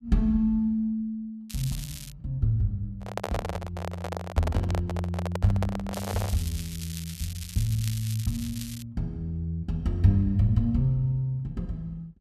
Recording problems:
crackling; at 1.5 s and from 6 to 9 s; loose cable, SNR 12 dB
handling noise; from 3 to 6.5 s; peak +1 dB vs average level

